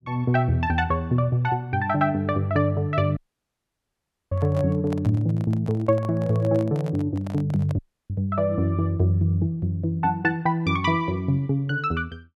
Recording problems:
dropout; at 3 s for 1 s and at 8 s
microphone handling noise; from 4.5 to 8 s; peak -8 dB vs average level

